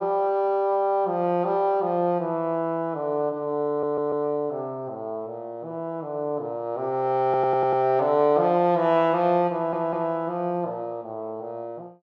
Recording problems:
stutter; at 3.5 s, at 7 s and at 9.5 s

